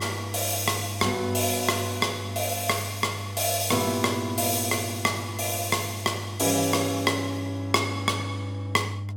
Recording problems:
hum; 50 Hz, harmonics up to 500 Hz, SNR 9 dB

